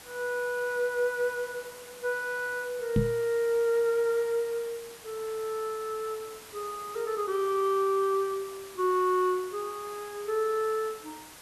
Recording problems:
background hiss; slope -2 dB per octave, SNR 17 dB
microphone bump; at 3 s; peak +7 dB vs average level

